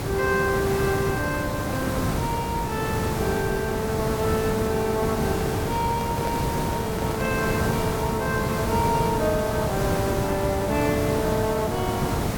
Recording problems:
background hiss; slope -6 dB per octave, SNR 0 dB
handling noise; from 5.5 to 7.5 s; peak -4 dB vs average level

